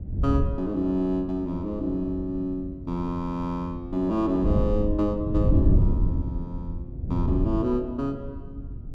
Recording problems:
wind noise; below 110 Hz, SNR 1 dB

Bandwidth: 12.5 kHz